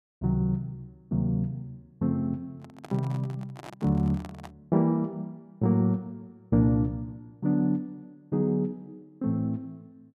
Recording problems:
microphone handling noise; from 2.5 to 4.5 s; peak -11 dB vs average level

